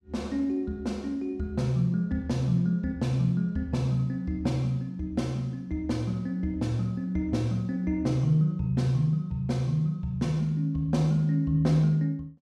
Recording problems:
none

